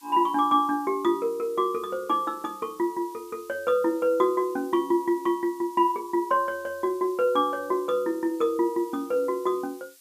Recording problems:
background hiss; slope +5 dB per octave, SNR 25 dB

